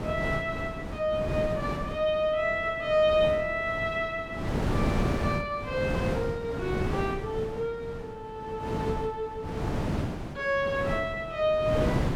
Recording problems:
wind noise; below 470 Hz, SNR 4 dB

